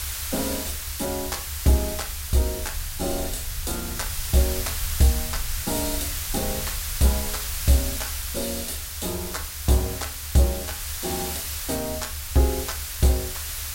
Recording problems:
hiss; slope +3 dB per octave, SNR 3 dB
rumble; below 76 Hz, SNR 10 dB

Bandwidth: 16 kHz